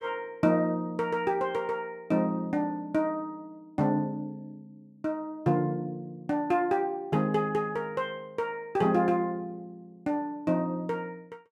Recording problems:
none

